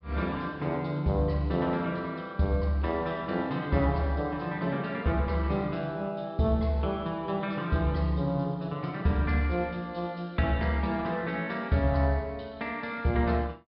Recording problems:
treble missing; nothing above 5.2 kHz

